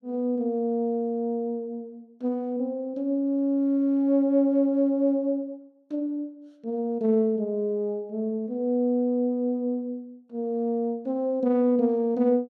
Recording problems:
none

